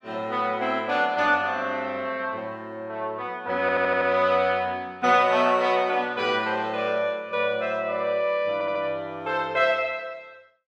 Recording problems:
stutter; at 3.5 s and at 8.5 s

